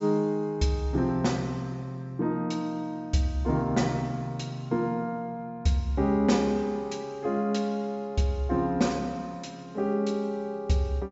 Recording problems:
low-pass filter; nothing above 8 kHz

